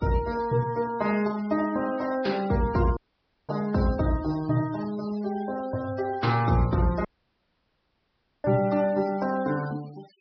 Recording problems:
low-pass filter; nothing above 5.5 kHz
denoising artefacts; signal-to-artefact ratio 20 dB
audio cutting out; at 3 s for 0.5 s and at 7 s for 1.5 s

